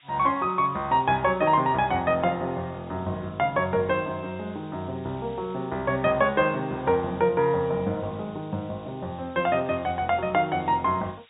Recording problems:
treble missing; nothing above 3.8 kHz
hiss; SNR 28 dB

